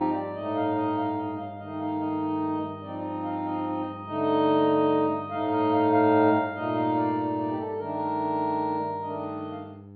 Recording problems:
low-pass filter; nothing above 4.4 kHz
hum; 50 Hz, harmonics up to 900 Hz, SNR 18 dB

